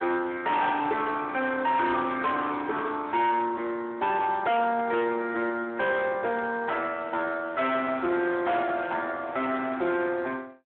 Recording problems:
telephone audio; 220 Hz to 3.7 kHz, Speex
distortion; hard clipping, signal-to-distortion ratio 10 dB

